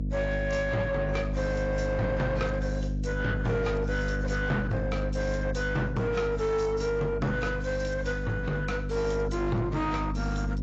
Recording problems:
lossy compression; AAC, log-spectral distance 2 dB, nothing above 7.3 kHz
distorted audio; soft clipping, signal-to-distortion ratio 11 dB
mains hum; 50 Hz, harmonics up to 550 Hz, SNR 3 dB

